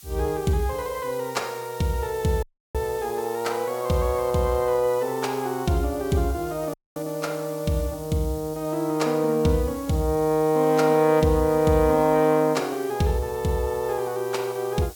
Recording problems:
hiss; slope +3 dB per octave, SNR 19 dB
audio cutting out; at 2.5 s and at 6.5 s

